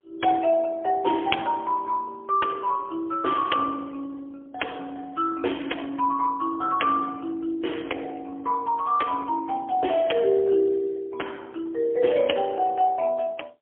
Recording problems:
phone line; 260 Hz to 3.3 kHz, AMR-NB, then MP3

